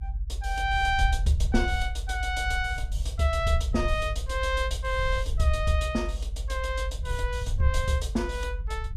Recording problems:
rumble; below 64 Hz, SNR 3 dB

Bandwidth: 14.5 kHz